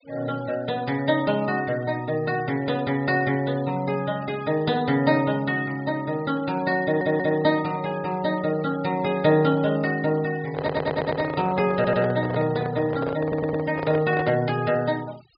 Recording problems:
low-pass filter; nothing above 5 kHz
noise reduction artefacts; signal-to-artefact ratio 21 dB
audio stuttering; 4 times, first at 7 s
handling noise; from 10 to 14 s; peak -3 dB vs average level

